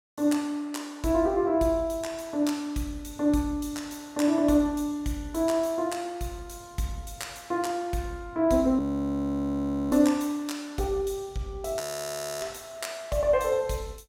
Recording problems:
audio freezing; at 9 s for 1 s and at 12 s for 0.5 s

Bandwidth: 16.5 kHz